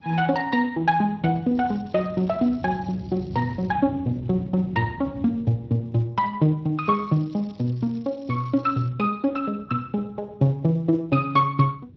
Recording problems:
codec artefacts; MP2, then Speex, log-spectral distance 3 dB
wind noise; below 210 Hz, SNR 16 dB
crackling; from 1.5 to 3.5 s and from 7 to 9 s; loose cable, SNR 30 dB

